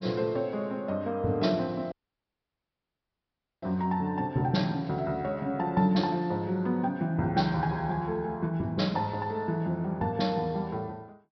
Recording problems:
treble cut off; nothing above 5.5 kHz
dropout; at 2 s for 1.5 s

